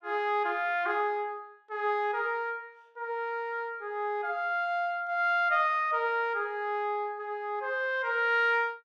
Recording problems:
none

